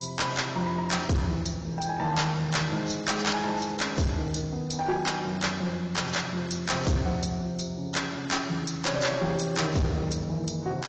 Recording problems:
lossy codec; AAC, log-spectral distance 6 dB
distortion; hard clipping, uneven, signal-to-distortion ratio 9 dB

